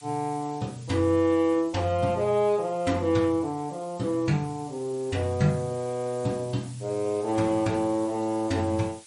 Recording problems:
lossy compression; MP3, log-spectral distance 8 dB, nothing above 10.4 kHz
hiss; slope +4 dB per octave, SNR 22 dB

